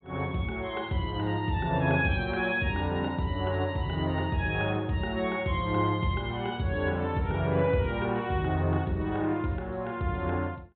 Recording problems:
low-pass filter; nothing above 4 kHz

